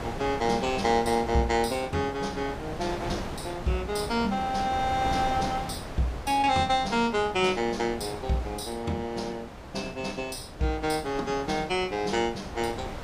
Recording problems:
wind noise; below 960 Hz, SNR 10 dB

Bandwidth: 15.5 kHz